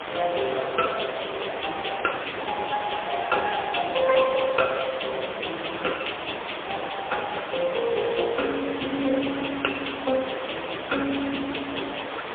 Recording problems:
phone line; 220 Hz to 3.4 kHz, AMR-NB, then MP3
hiss; SNR 6 dB

